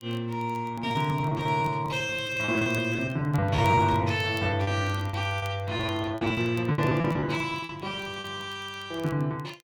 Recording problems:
crackle; vinyl, SNR 26 dB
lost packets; 19% of the sound replaced, filled with repeated pitch periods

